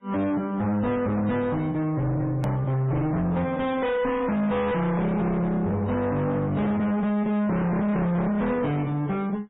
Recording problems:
lossy compression; AAC, then MP3, log-spectral distance 2 dB, nothing above 13.1 kHz
distorted audio; soft clipping, signal-to-distortion ratio 6 dB
edit click; at 2.5 s

